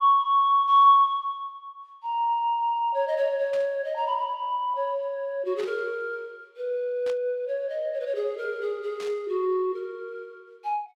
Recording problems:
burst of static; 4 times, first at 3.5 s; peak -12 dB vs average level

